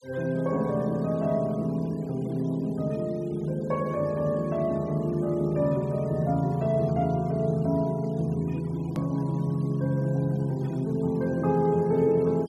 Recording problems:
noise reduction artefacts; signal-to-artefact ratio 27 dB
hard cut with a click; at 9 s

